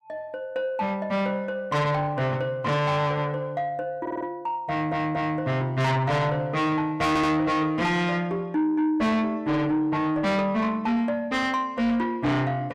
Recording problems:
distortion; soft clipping, signal-to-distortion ratio 8 dB
stutter; at 4 s, at 4.5 s and at 7 s

